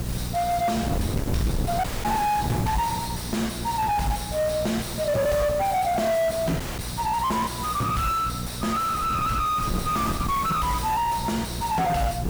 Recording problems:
distortion; soft clipping, signal-to-distortion ratio 6 dB
electrical hum; 60 Hz, harmonics up to 540 Hz, SNR 9 dB
background hiss; slope -3 dB per octave, SNR 13 dB
wind on the microphone; below 340 Hz, SNR 7 dB
dropout; at 2 s and at 6.5 s

